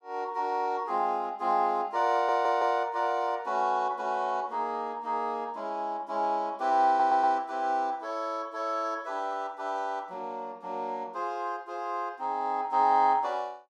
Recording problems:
audio stuttering; at 2 s and at 7 s

